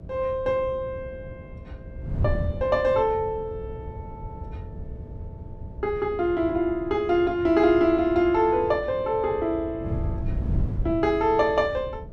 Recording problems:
hum; 60 Hz, harmonics up to 660 Hz, SNR 23 dB
wind noise; below 130 Hz, SNR 11 dB

